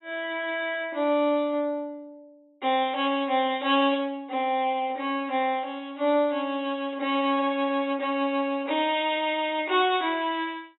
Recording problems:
treble cut off; nothing above 3.8 kHz

